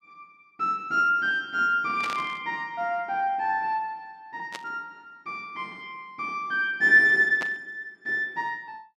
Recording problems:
burst of static; at 2 s, at 4.5 s and at 7.5 s; peak -6 dB vs average level

